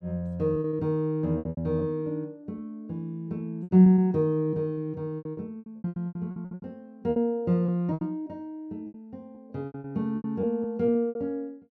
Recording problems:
packet loss; 15% of the sound replaced, filled with repeated pitch periods

